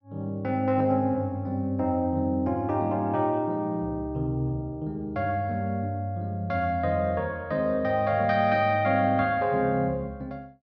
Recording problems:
none

